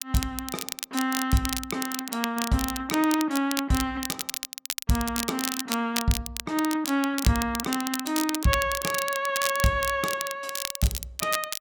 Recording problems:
crackle; vinyl, SNR 5 dB

